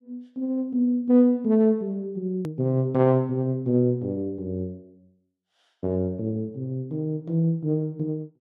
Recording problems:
edit click; at 2.5 s

